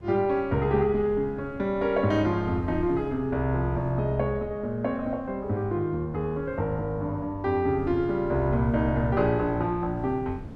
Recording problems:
wind noise; below 190 Hz, SNR 17 dB

